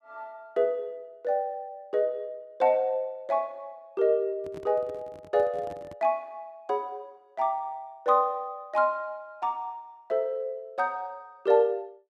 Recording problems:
handling noise; from 4.5 to 6 s; peak -12 dB vs average level

